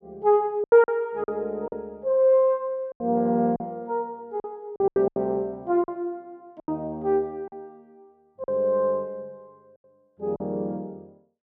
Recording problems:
packet loss; 8% of the sound replaced, filled with silence

